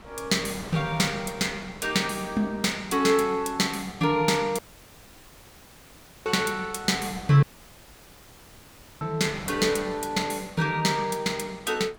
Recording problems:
wind on the microphone; below 1.3 kHz, SNR 19 dB
dropout; at 4.5 s for 1.5 s and at 7.5 s for 1.5 s

